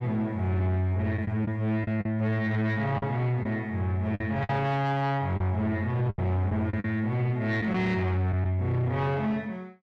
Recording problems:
distortion; soft clipping, signal-to-distortion ratio 12 dB
lost packets; 5% of the sound replaced, filled with the last packet

